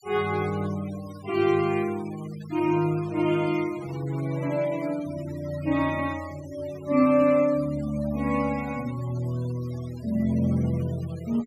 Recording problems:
noise reduction artefacts; signal-to-artefact ratio 19 dB

